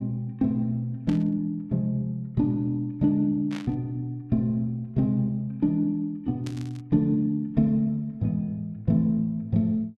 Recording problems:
static burst; at 1 s, at 3.5 s and at 6.5 s; peak -10 dB vs average level

